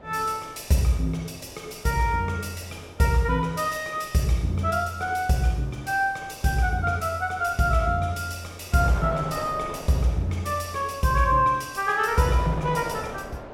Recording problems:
wind on the microphone; below 880 Hz, SNR 16 dB

